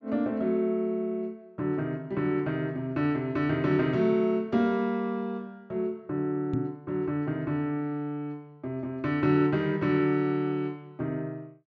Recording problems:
treble missing; nothing above 8 kHz
microphone bump; at 6.5 s; peak +3 dB vs average level

